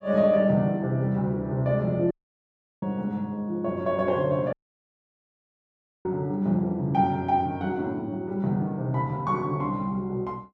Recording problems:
audio cutting out; at 2 s for 0.5 s and at 4.5 s for 1.5 s

